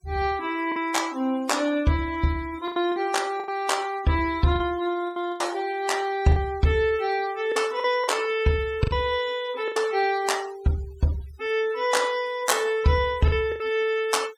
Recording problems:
noise reduction artefacts; signal-to-artefact ratio 19 dB
lost packets; 6% of the sound replaced, filled with the last packet

